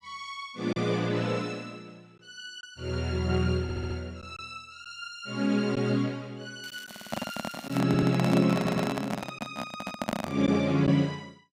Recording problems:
packet loss; 1.8% of the sound replaced, filled with silence
audio stuttering; 4 times, first at 3.5 s
crackle; from 6.5 to 8 s; loose cable, SNR 19 dB
handling noise; from 7 to 10 s; peak +2 dB vs average level

